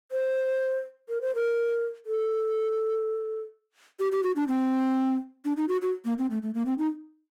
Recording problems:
distorted audio; hard clipping, signal-to-distortion ratio 10 dB

